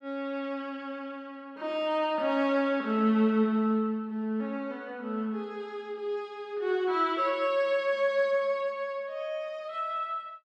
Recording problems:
none

